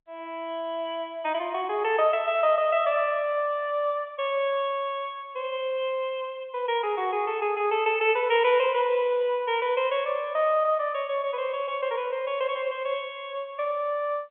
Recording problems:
telephone audio; 320 Hz to 3.4 kHz, G.711

